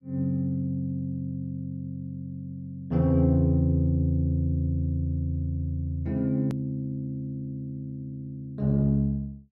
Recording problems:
edit click; at 6.5 s

